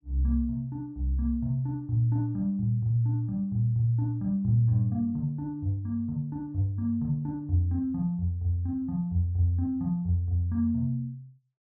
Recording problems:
none

